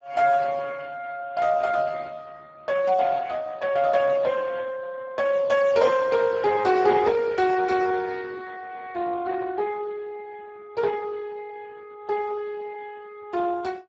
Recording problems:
lossy codec; Speex, log-spectral distance 4 dB, nothing above 7.6 kHz

